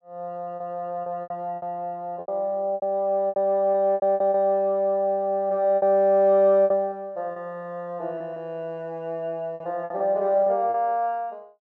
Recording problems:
packet loss; 10% of the sound replaced, filled with repeated pitch periods

